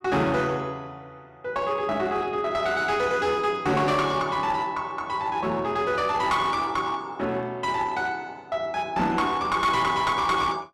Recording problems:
distorted audio; hard clipping, uneven, signal-to-distortion ratio 11 dB

